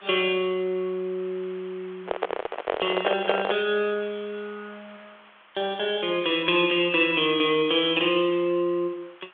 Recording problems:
telephone audio; 300 Hz to 3.4 kHz, G.726
hiss; SNR 25 dB
handling noise; from 2 to 3.5 s; peak +5 dB vs average level

